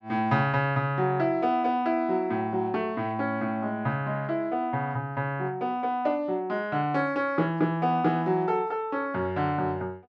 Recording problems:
none

